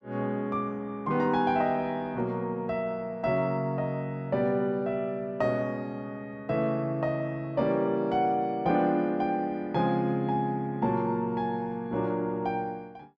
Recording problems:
none

